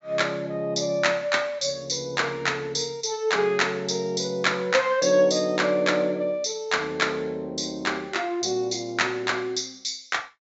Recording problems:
treble cut off; nothing above 8 kHz

